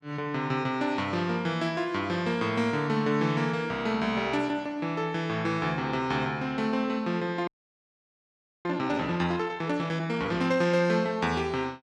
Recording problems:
audio freezing; at 7.5 s for 1 s

